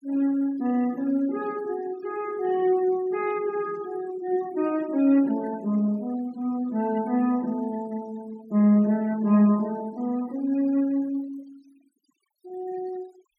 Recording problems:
denoising artefacts; signal-to-artefact ratio 24 dB

